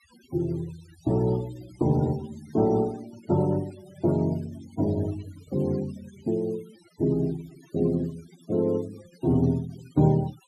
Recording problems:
noise reduction artefacts; signal-to-artefact ratio 22 dB

